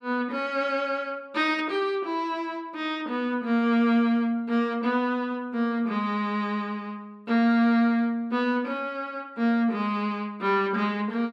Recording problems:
none

